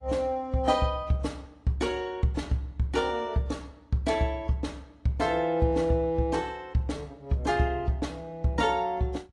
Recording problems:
lossy compression; AAC, log-spectral distance 2 dB

